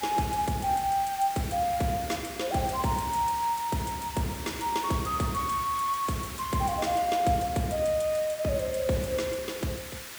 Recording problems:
background hiss; SNR 11 dB

